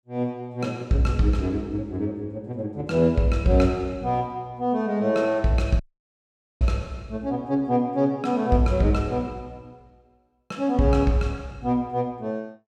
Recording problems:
audio cutting out; at 6 s for 1 s

